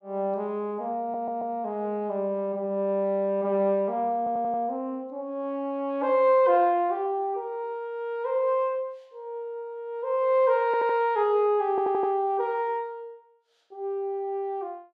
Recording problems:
stutter; 4 times, first at 1 s

